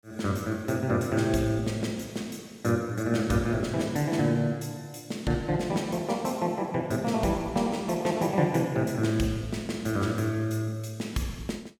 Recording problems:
none

